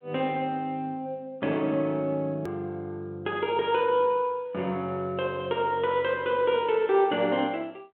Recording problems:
telephone audio; 240 Hz to 3.4 kHz, G.726
edit click; at 2.5 s

